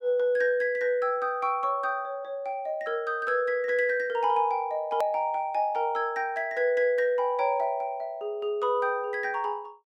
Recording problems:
edit click; at 5 s

